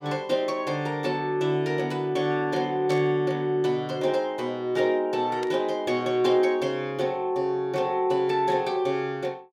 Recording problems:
static burst; at 3 s and at 5.5 s; peak -10 dB vs average level

